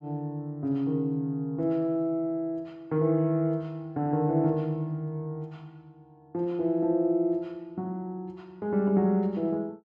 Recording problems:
none

